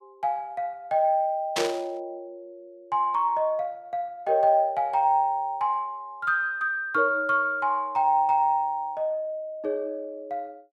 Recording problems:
static burst; at 1.5 s; peak +2 dB vs average level

